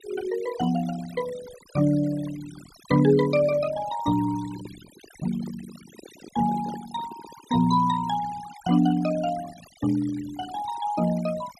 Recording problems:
noise reduction artefacts; signal-to-artefact ratio 17 dB
microphone handling noise; from 4.5 to 8 s; peak -11 dB vs average level

